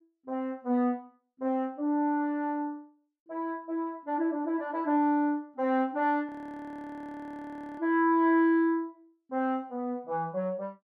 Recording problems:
audio freezing; at 6.5 s for 1.5 s

